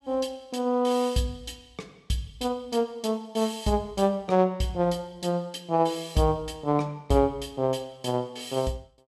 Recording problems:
none

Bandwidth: 15 kHz